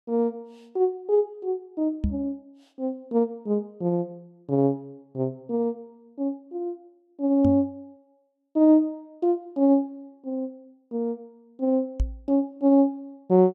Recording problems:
microphone bump; at 2 s, at 7.5 s and at 12 s; peak +3 dB vs average level

